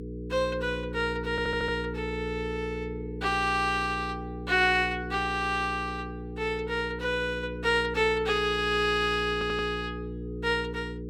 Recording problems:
hum; 60 Hz, harmonics up to 480 Hz, SNR 9 dB
audio stuttering; at 1.5 s and at 9.5 s

